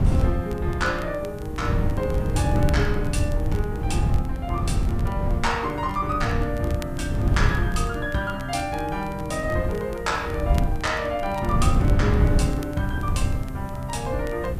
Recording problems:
hiss; SNR 27 dB
wind noise; below 130 Hz, SNR -1 dB
crackle; vinyl, SNR 21 dB

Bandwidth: 14.5 kHz